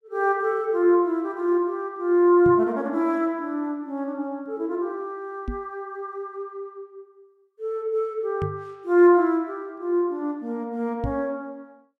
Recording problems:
knock on the microphone; 4 times, first at 2.5 s; peak -1 dB vs average level

